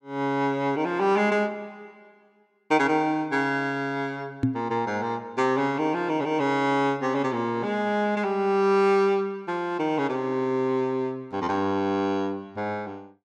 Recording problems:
microphone thump; at 4.5 s; peak +5 dB vs average level

